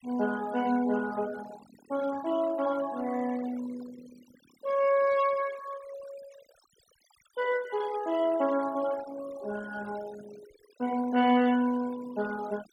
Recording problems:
noise reduction artefacts; signal-to-artefact ratio 17 dB

